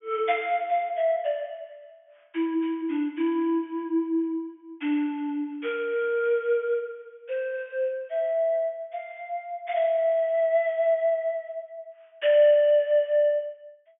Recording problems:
low-pass filter; nothing above 3.4 kHz

